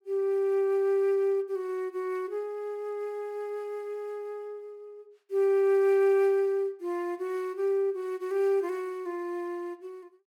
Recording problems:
none

